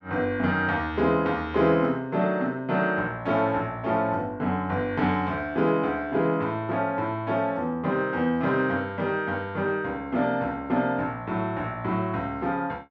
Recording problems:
none

